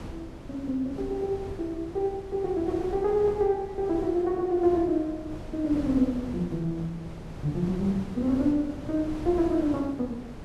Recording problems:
wind noise; below 380 Hz, SNR 12 dB

